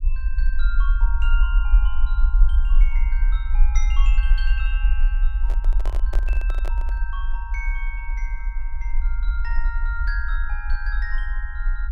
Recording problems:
rumble; below 44 Hz, SNR -12 dB
handling noise; from 5.5 to 7 s; peak +4 dB vs average level

